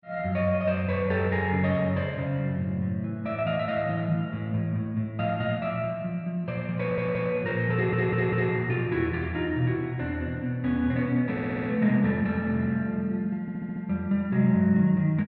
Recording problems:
audio stuttering; 4 times, first at 7 s

